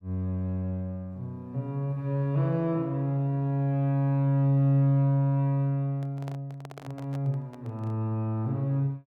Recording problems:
handling noise; from 6 to 8 s; peak -12 dB vs average level

